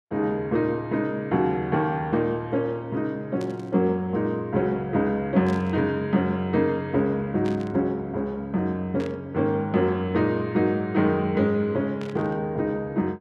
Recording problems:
burst of static; 5 times, first at 3.5 s; peak -12 dB vs average level

